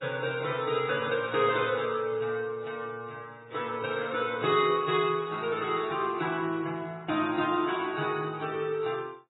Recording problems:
lossy codec; AAC, then MP3, log-spectral distance 3 dB, nothing above 3.5 kHz

